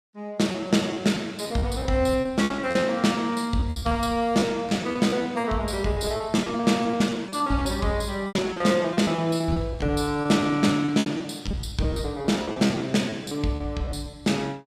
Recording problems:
lost packets; 16% of the sound replaced, filled with repeated pitch periods

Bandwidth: 15 kHz